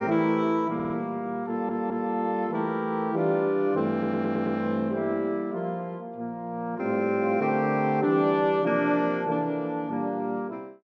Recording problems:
audio stuttering; at 1 s, at 1.5 s and at 4 s

